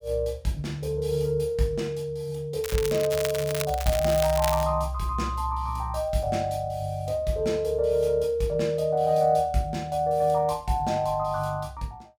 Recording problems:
crackling; from 2.5 to 4.5 s; loose cable, SNR 8 dB

